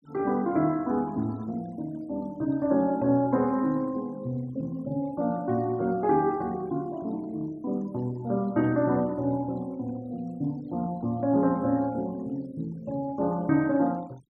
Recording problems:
noise reduction artefacts; signal-to-artefact ratio 27 dB

